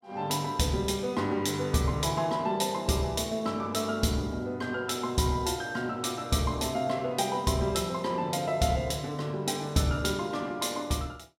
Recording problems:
none

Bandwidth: 16 kHz